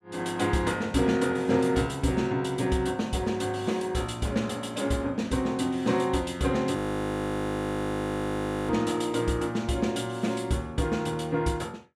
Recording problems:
audio freezing; at 7 s for 2 s

